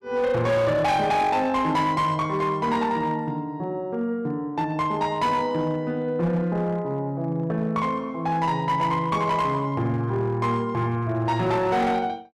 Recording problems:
distortion; hard clipping, uneven, signal-to-distortion ratio 12 dB

